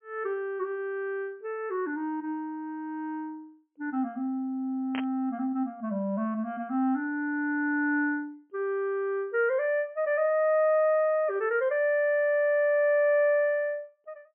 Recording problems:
treble cut off; nothing above 3.2 kHz
burst of static; at 5 s; peak -4 dB vs average level

